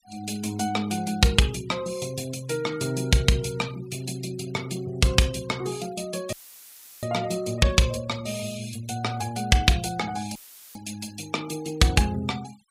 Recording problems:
noise reduction artefacts; signal-to-artefact ratio 21 dB
dropout; at 6.5 s for 0.5 s and at 10 s; filled with static

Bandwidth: 15.5 kHz